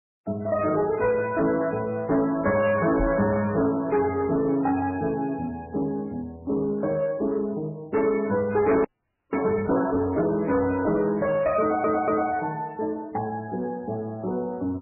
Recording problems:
lossy compression; MP3, log-spectral distance 2 dB, nothing above 2.5 kHz
distortion; soft clipping, signal-to-distortion ratio 11 dB
microphone thump; at 3 s; peak -1 dB vs average level
audio freezing; at 9 s
stutter; at 12 s

